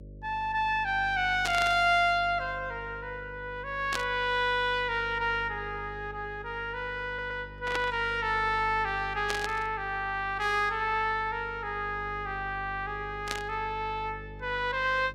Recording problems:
hum; 50 Hz, harmonics up to 600 Hz, SNR 17 dB
static burst; 5 times, first at 1.5 s; peak +1 dB vs average level
stutter; at 7 s

